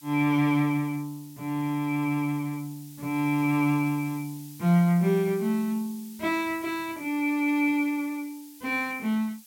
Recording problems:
hiss; SNR 21 dB

